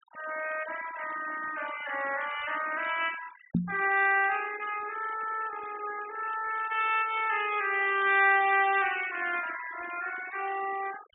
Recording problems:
treble missing; nothing above 4 kHz
denoising artefacts; signal-to-artefact ratio 14 dB
microphone bump; at 3.5 s; peak +5 dB vs average level

